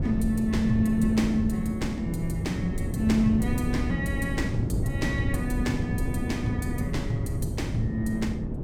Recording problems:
wind on the microphone; below 220 Hz, SNR 2 dB

